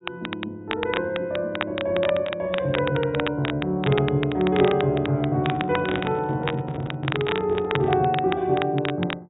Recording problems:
treble missing; nothing above 4 kHz
crackling; vinyl, SNR 9 dB
microphone handling noise; from 5.5 to 8 s; peak -4 dB vs average level

